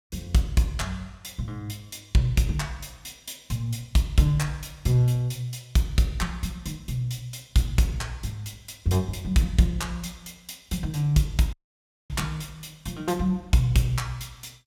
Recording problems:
audio cutting out; at 12 s for 0.5 s

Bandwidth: 17.5 kHz